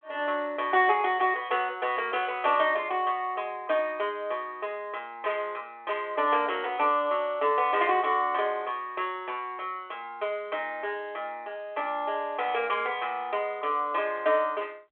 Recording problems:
phone line; 320 Hz to 3.4 kHz, G.726

